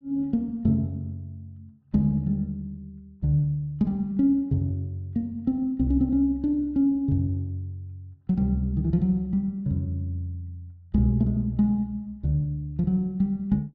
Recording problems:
none

